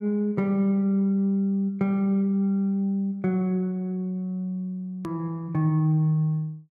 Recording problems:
hard cut with a click; at 5 s

